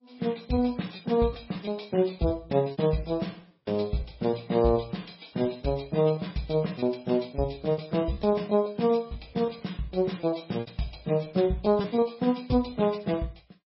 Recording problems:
codec artefacts; MP3, log-spectral distance 5 dB, nothing above 5.5 kHz
lost packets; 10% of the sound replaced, filled with repeated pitch periods

